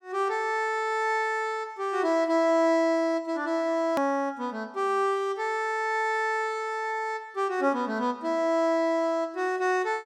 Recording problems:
edit click; at 4 s

